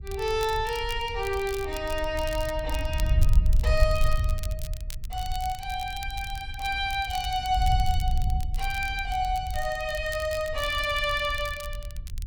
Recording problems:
wind noise; below 72 Hz, SNR 3 dB
crackling; vinyl, SNR 15 dB

